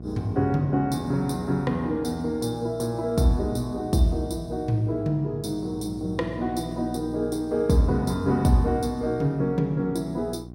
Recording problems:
hum; 60 Hz, harmonics up to 780 Hz, SNR 15 dB

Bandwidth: 16 kHz